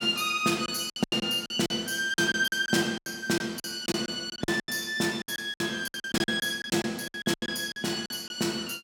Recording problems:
lost packets; 16% of the sound replaced, filled with silence

